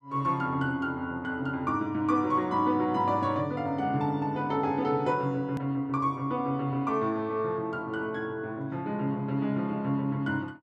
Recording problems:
edit click; at 5.5 s

